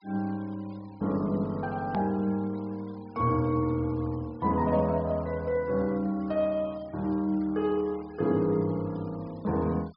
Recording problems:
treble missing; nothing above 5.5 kHz
denoising artefacts; signal-to-artefact ratio 26 dB
edit click; at 2 s

